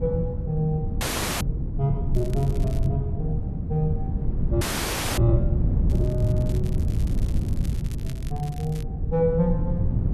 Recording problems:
rumble; below 130 Hz, SNR 6 dB
wind noise; below 140 Hz, SNR 0 dB
frozen audio; at 1 s and at 4.5 s for 0.5 s
crackle; at 2 s and from 6 to 9 s; loose cable, SNR 20 dB

